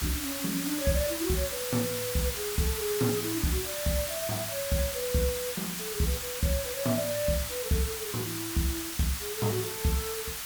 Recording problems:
background hiss; SNR 2 dB

